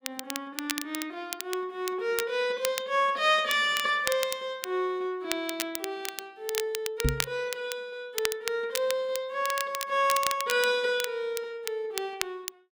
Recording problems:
crackling; vinyl, SNR 7 dB
microphone thump; at 7 s; peak +6 dB vs average level

